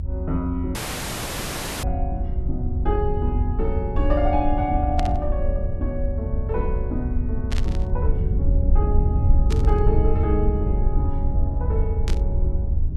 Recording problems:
rumble; below 80 Hz, SNR -4 dB
audio cutting out; at 1 s for 1 s
static burst; 5 times, first at 2 s; peak 0 dB vs average level

